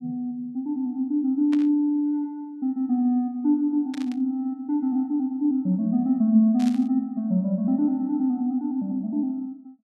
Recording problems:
static burst; at 1.5 s, at 4 s and at 6.5 s; peak -12 dB vs average level

